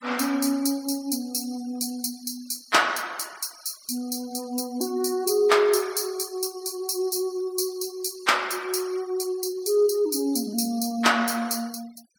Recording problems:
noise reduction artefacts; signal-to-artefact ratio 23 dB

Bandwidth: 17.5 kHz